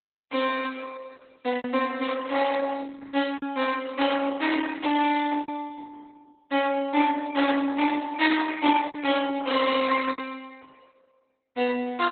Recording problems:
codec artefacts; Opus, log-spectral distance 5 dB, nothing above 4 kHz
packet loss; 4% of the sound replaced, filled with repeated pitch periods

